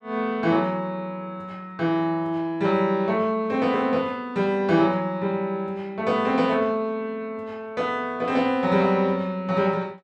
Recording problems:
none

